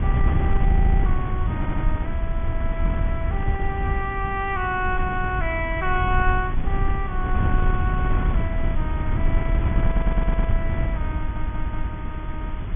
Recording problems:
low-pass filter; nothing above 3.5 kHz
hiss; SNR 14 dB
wind noise; below 88 Hz, SNR -4 dB
stutter; 4 times, first at 0.5 s

